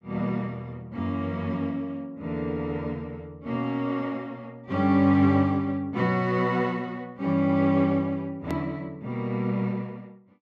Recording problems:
hard cut with a click; at 8.5 s

